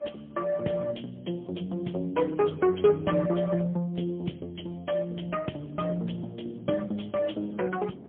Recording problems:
phone line; 170 Hz to 3.3 kHz, AMR-NB, then MP3
wind noise; below 400 Hz, SNR 21 dB

